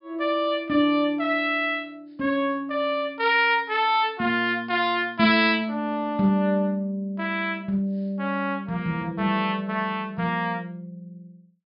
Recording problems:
treble missing; nothing above 5.2 kHz

